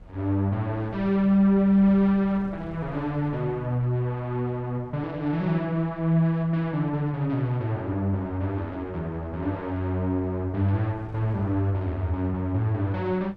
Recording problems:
wind noise; below 230 Hz, SNR 22 dB

